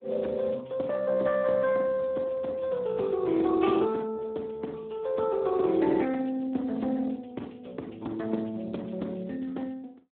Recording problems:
phone line; 240 Hz to 3 kHz, Speex

